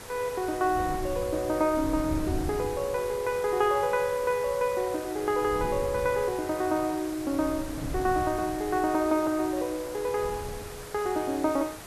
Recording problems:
hiss; slope -3 dB per octave, SNR 14 dB
wind on the microphone; below 180 Hz, SNR 12 dB

